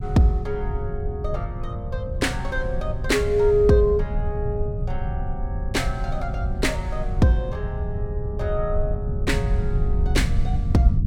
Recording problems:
low-frequency rumble; below 100 Hz, SNR 3 dB

